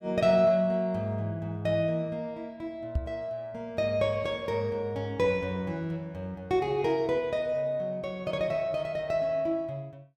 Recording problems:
microphone thump; at 3 s; peak +4 dB vs average level

